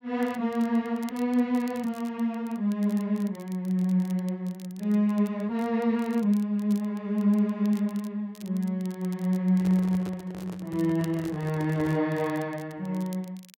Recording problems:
crackling; vinyl, SNR 25 dB
handling noise; from 9.5 to 12 s; peak -8 dB vs average level

